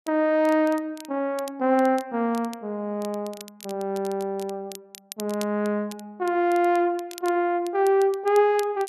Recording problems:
crackle; vinyl, SNR 20 dB

